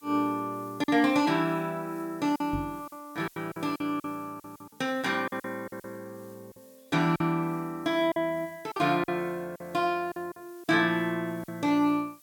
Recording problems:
hiss; slope +2 dB per octave, SNR 26 dB
packet loss; 8% of the sound replaced, filled with silence
microphone bump; at 2.5 s; peak -2 dB vs average level

